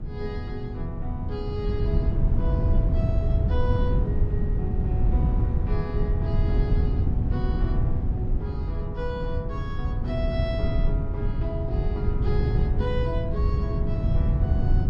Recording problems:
wind on the microphone; below 110 Hz, SNR -9 dB

